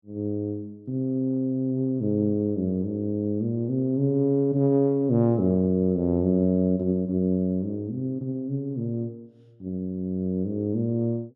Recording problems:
none

